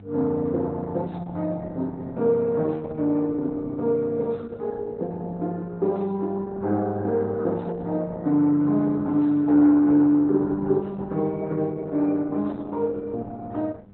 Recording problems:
codec artefacts; AAC, then Opus, log-spectral distance 2 dB, nothing above 4 kHz
hum; 50 Hz, harmonics up to 800 Hz, SNR 23 dB

